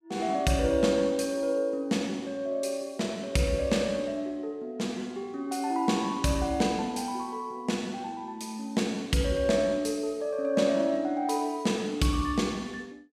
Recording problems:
none

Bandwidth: 14.5 kHz